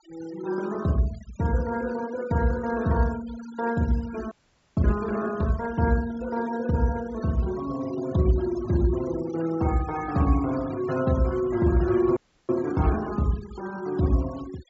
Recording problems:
low-pass filter; nothing above 8 kHz
denoising artefacts; signal-to-artefact ratio 18 dB
frozen audio; at 4.5 s and at 12 s

